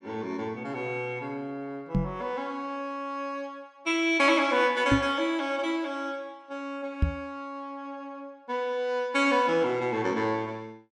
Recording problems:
knock on the microphone; at 2 s, at 5 s and at 7 s; peak +8 dB vs average level

